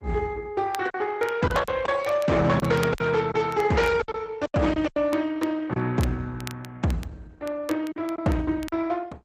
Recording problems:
lossy codec; Opus, log-spectral distance 3 dB
distorted audio; hard clipping, uneven, signal-to-distortion ratio 12 dB
crackle; vinyl, SNR 20 dB
packet loss; 7% of the sound replaced, filled with silence

